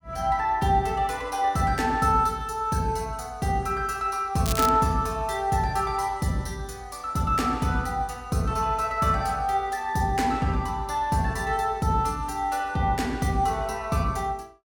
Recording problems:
crackle; at 4.5 s; loose cable, SNR 8 dB

